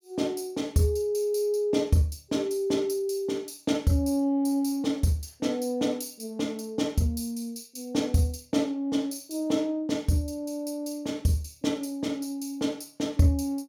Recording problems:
none

